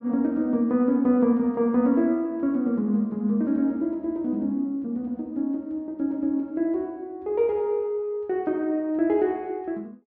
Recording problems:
none

